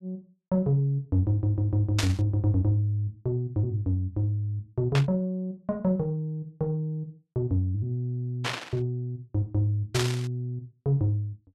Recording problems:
burst of static; 4 times, first at 2 s; peak +4 dB vs average level

